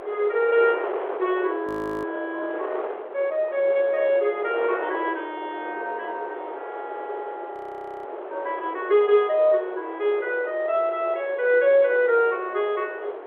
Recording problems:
telephone audio; 340 Hz to 3.4 kHz, G.711
wind noise; below 850 Hz, SNR 11 dB
frozen audio; at 1.5 s and at 7.5 s for 0.5 s

